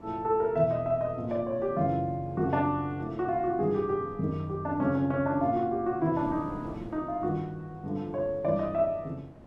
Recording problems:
wind on the microphone; below 440 Hz, SNR 19 dB

